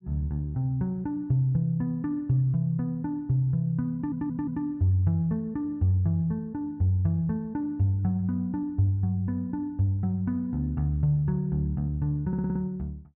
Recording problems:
audio stuttering; at 4 s and at 12 s

